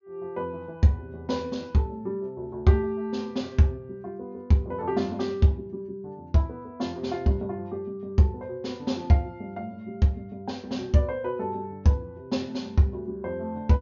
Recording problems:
low-pass filter; nothing above 6.9 kHz

